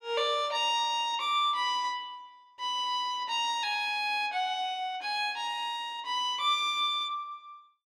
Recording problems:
none

